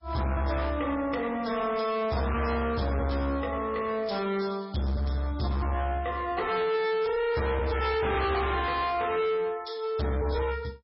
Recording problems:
codec artefacts; MP3, log-spectral distance 4 dB, nothing above 5.3 kHz
distortion; hard clipping, uneven, signal-to-distortion ratio 6 dB

